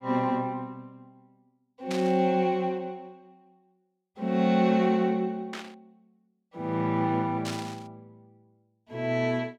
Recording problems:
burst of static; at 2 s, at 5.5 s and at 7.5 s; peak -5 dB vs average level

